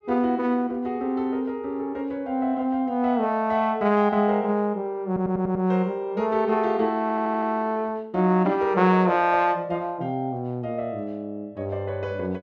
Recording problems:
audio stuttering; at 5 s and at 7 s

